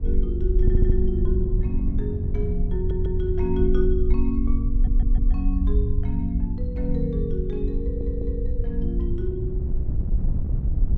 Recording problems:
low-frequency rumble; below 56 Hz, SNR -2 dB
wind noise; below 140 Hz, SNR 6 dB
audio stuttering; 4 times, first at 0.5 s

